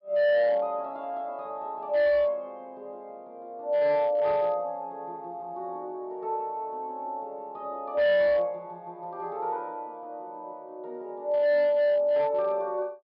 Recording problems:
treble missing; nothing above 5.5 kHz
distortion; hard clipping, signal-to-distortion ratio 11 dB

